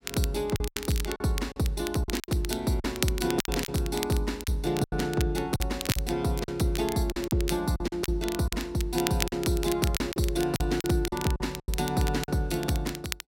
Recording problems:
crackling; vinyl, SNR 8 dB
packet loss; 10% of the sound replaced, filled with silence

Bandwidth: 16 kHz